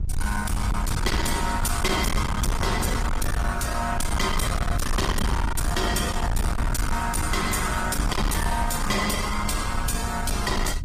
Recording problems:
codec artefacts; Opus, log-spectral distance 4 dB, nothing above 15.1 kHz
distortion; hard clipping, uneven, signal-to-distortion ratio 7 dB
rumble; below 100 Hz, SNR 3 dB

